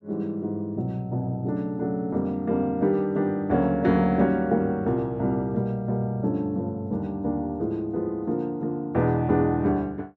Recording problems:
none

